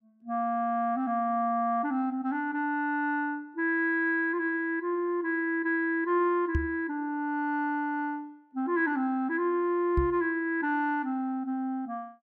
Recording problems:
knock on the microphone; at 6.5 s and at 10 s; peak +3 dB vs average level

